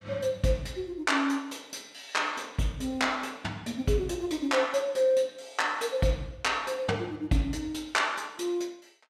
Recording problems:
none

